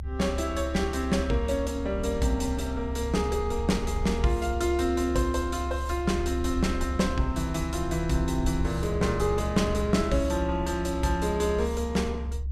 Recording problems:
low-frequency rumble; below 70 Hz, strongest tone 68 Hz, SNR 6 dB

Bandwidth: 15.5 kHz